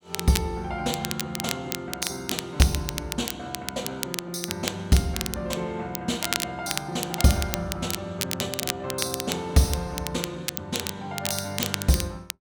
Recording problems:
crackling; vinyl, SNR 4 dB

